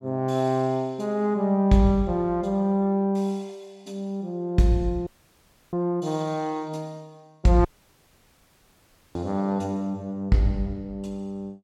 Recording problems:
dropout; at 5 s for 0.5 s and at 7.5 s for 1.5 s

